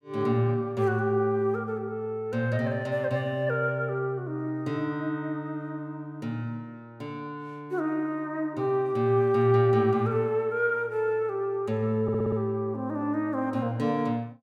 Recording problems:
audio stuttering; at 12 s

